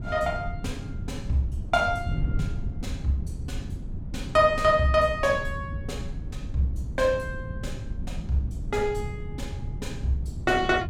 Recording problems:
wind on the microphone; below 140 Hz, SNR 9 dB

